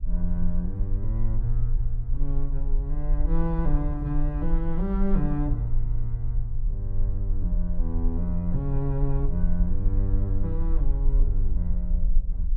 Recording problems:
low-frequency rumble; below 40 Hz, strongest tone 20 Hz, SNR -2 dB

